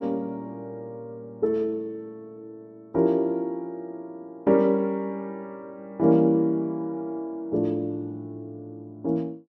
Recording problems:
none

